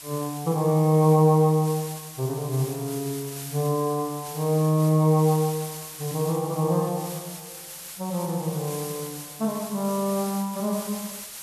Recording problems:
hiss; slope +1 dB per octave, SNR 13 dB

